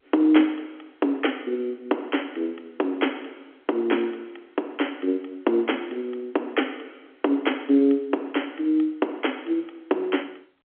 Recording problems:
telephone audio; 240 Hz to 3.3 kHz, G.711

